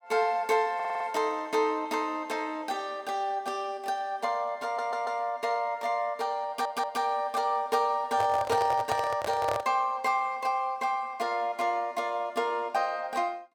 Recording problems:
stutter; at 1 s, at 4.5 s and at 6.5 s
handling noise; from 8 to 9.5 s; peak +1 dB vs average level

